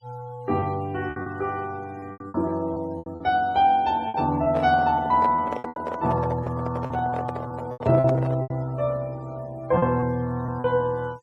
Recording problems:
noise reduction artefacts; signal-to-artefact ratio 24 dB
lost packets; 10% of the sound replaced, filled with repeated pitch periods
microphone handling noise; from 4.5 to 8.5 s; peak -2 dB vs average level

